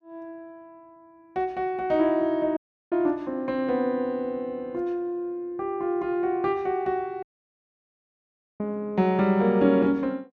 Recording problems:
dropout; at 2.5 s and at 7 s for 1.5 s

